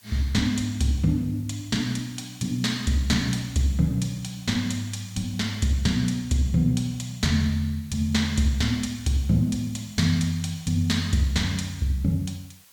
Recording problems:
background hiss; slope +1 dB per octave, SNR 26 dB

